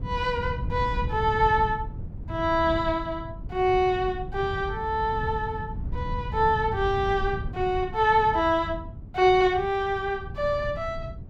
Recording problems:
low-frequency rumble; below 130 Hz, SNR 10 dB

